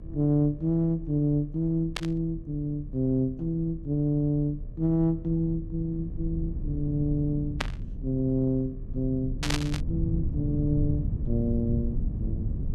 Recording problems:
hum; 60 Hz, harmonics up to 1.3 kHz, SNR 29 dB
rumble; below 120 Hz, SNR 7 dB
burst of static; at 2 s, at 7.5 s and at 9.5 s; peak +3 dB vs average level

